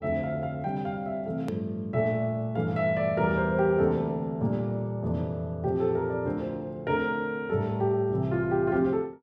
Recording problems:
hard cut with a click; at 1.5 s

